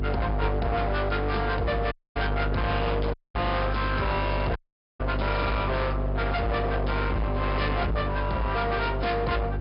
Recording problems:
low-pass filter; nothing above 5.2 kHz
lossy compression; AAC, log-spectral distance 2 dB
distorted audio; hard clipping, signal-to-distortion ratio 7 dB
hum; 50 Hz, harmonics up to 1.4 kHz, SNR 2 dB
wind on the microphone; below 860 Hz, SNR 19 dB
dropout; at 2 s, at 3 s and at 4.5 s

